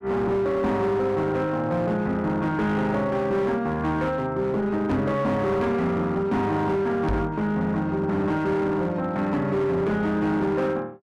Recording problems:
distortion; hard clipping, uneven, signal-to-distortion ratio 11 dB
knock on the microphone; at 5 s and at 7 s; peak +2 dB vs average level

